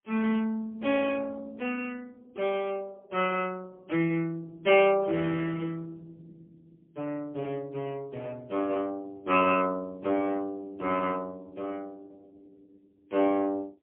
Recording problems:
phone line; 300 Hz to 3.3 kHz, AMR-NB, then MP3

